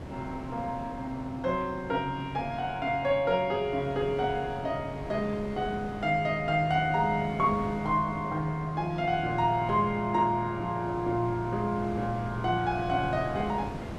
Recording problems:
wind on the microphone; below 580 Hz, SNR 12 dB

